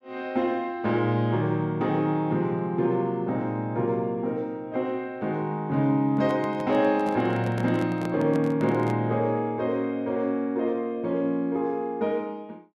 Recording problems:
handling noise; from 6 to 9 s; peak -5 dB vs average level

